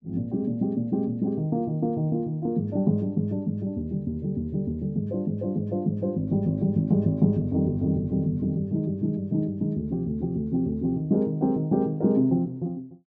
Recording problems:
none

